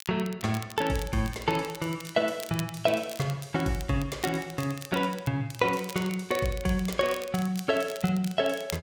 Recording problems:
crackling; vinyl, SNR 15 dB

